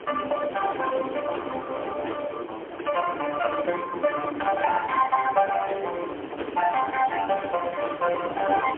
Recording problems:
telephone audio; 260 Hz to 2.3 kHz, AMR-NB, then MP3
wind on the microphone; below 900 Hz, SNR 11 dB

